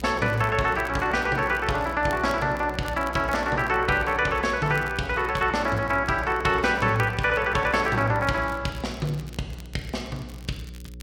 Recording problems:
hum; 60 Hz, harmonics up to 540 Hz, SNR 16 dB
crackle; vinyl, SNR 25 dB

